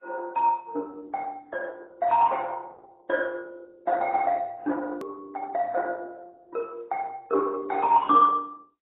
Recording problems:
codec artefacts; Opus, then AAC, log-spectral distance 3 dB, nothing above 3.3 kHz
edit click; at 5 s

